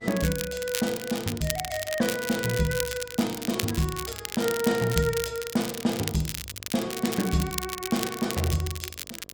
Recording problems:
electrical hum; 50 Hz, harmonics up to 1.3 kHz, SNR 27 dB
crackling; vinyl, SNR 6 dB

